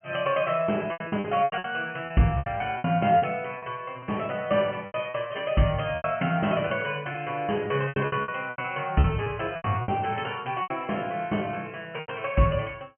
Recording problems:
treble missing; nothing above 3.1 kHz
lost packets; 12% of the sound replaced, filled with repeated pitch periods

